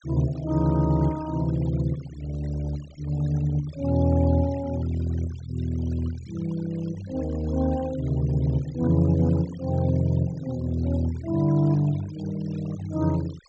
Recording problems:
treble missing; nothing above 8 kHz
denoising artefacts; signal-to-artefact ratio 20 dB

